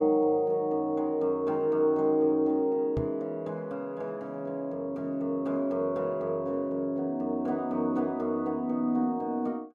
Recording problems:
knock on the microphone; at 3 s; peak 0 dB vs average level

